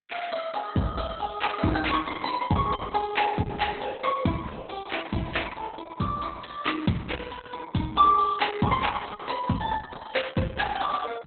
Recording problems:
lossy codec; Opus, log-spectral distance 7 dB, nothing above 4 kHz

